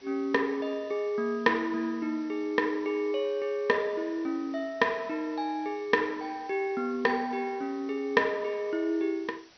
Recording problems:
low-pass filter; nothing above 6 kHz
hiss; slope -1 dB per octave, SNR 26 dB

